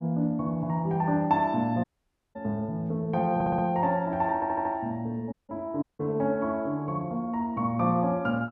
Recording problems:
dropout; at 2 s for 0.5 s, at 5.5 s and at 6 s
audio stuttering; at 3.5 s and at 4.5 s

